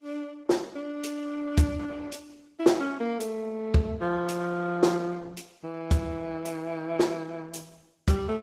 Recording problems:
lossy compression; Vorbis, then Opus, log-spectral distance 3 dB, nothing above 15.1 kHz

